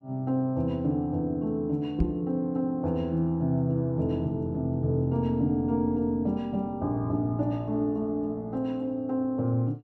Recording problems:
knock on the microphone; at 2 s; peak +3 dB vs average level

